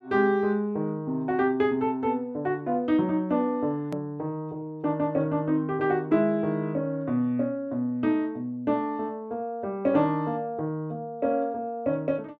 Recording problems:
click at an edit; at 4 s

